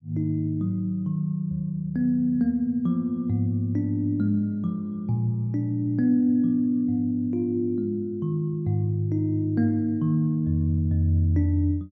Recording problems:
none

